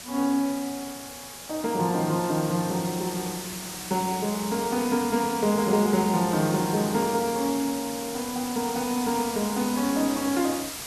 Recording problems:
background hiss; slope 0 dB per octave, SNR 9 dB

